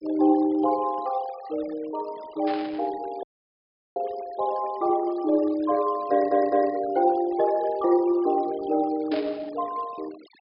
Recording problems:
treble missing; nothing above 5.5 kHz
noise reduction artefacts; signal-to-artefact ratio 22 dB
static burst; at 2.5 s and at 9 s; peak -9 dB vs average level
dropout; at 3 s for 0.5 s
stutter; at 6 s

